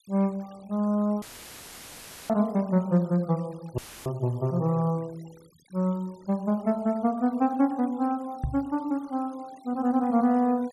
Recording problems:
denoising artefacts; signal-to-artefact ratio 27 dB
dropout; at 1 s for 1 s and at 4 s; filled with static
microphone bump; at 8.5 s; peak +1 dB vs average level

